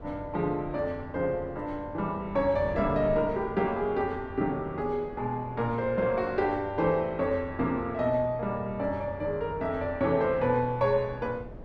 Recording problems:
wind noise; below 420 Hz, SNR 15 dB

